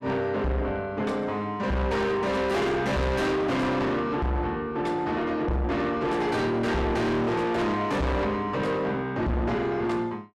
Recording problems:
distorted audio; soft clipping, signal-to-distortion ratio 6 dB

